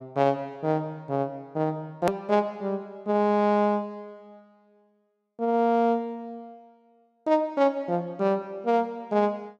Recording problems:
hard cut with a click; at 2 s

